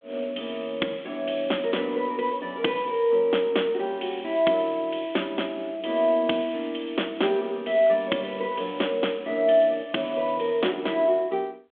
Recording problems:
phone line; 240 Hz to 3.5 kHz, G.726

